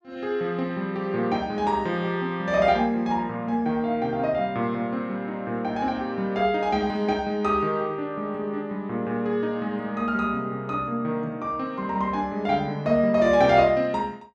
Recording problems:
none

